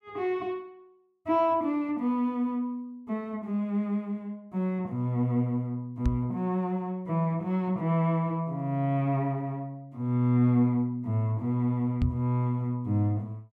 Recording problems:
microphone thump; at 6 s and at 12 s; peak +5 dB vs average level

